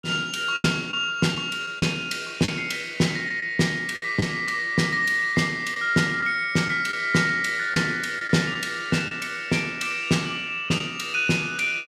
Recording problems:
lost packets; 4% of the sound replaced, filled with the last packet

